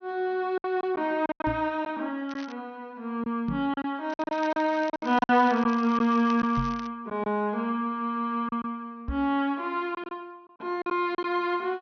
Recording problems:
treble cut off; nothing above 6.2 kHz
lost packets; 8% of the sound replaced, filled with silence
knock on the microphone; 4 times, first at 1.5 s; peak 0 dB vs average level
crackling; at 2.5 s and from 4 to 7 s; loose cable, SNR 20 dB

